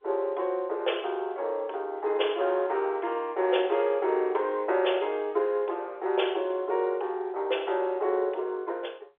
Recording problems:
phone line; 320 Hz to 3.6 kHz, G.711

